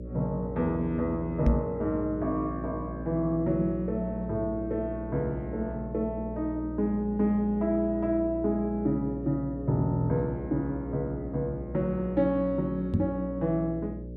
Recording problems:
hum; 60 Hz, harmonics up to 600 Hz, SNR 10 dB
knock on the microphone; at 1.5 s and at 13 s; peak +9 dB vs average level

